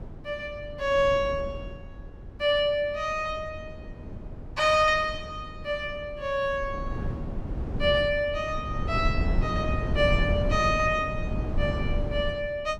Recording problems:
wind on the microphone; below 180 Hz, SNR 6 dB

